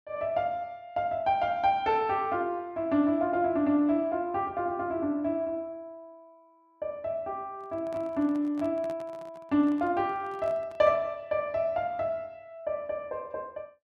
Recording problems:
handling noise; from 7.5 to 11 s; peak -12 dB vs average level

